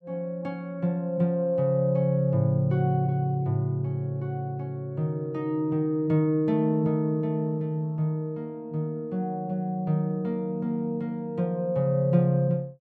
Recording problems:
none

